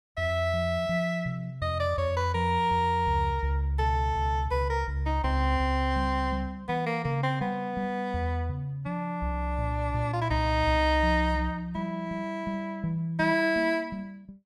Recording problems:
none

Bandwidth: 14.5 kHz